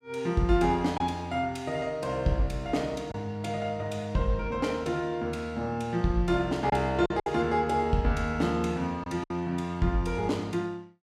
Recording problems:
packet loss; 2% of the sound replaced, filled with silence

